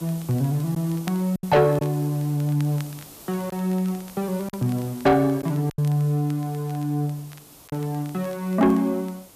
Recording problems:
distortion; soft clipping, signal-to-distortion ratio 12 dB
hiss; SNR 20 dB
crackle; vinyl, SNR 26 dB
lost packets; 3% of the sound replaced, filled with silence

